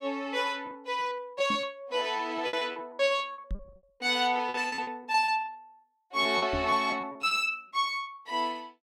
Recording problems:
packet loss; 14% of the sound replaced, filled with repeated pitch periods
knock on the microphone; at 1.5 s, at 3.5 s and at 6.5 s; peak -2 dB vs average level

